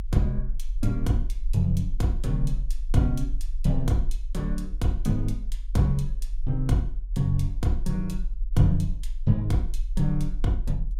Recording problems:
rumble; below 40 Hz, strongest tone 20 Hz, SNR 6 dB

